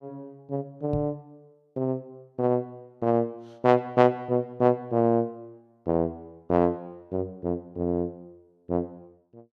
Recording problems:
knock on the microphone; at 1 s; peak -1 dB vs average level

